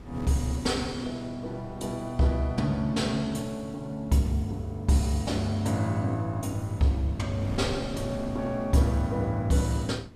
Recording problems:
wind noise; below 280 Hz, SNR 16 dB

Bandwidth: 14.5 kHz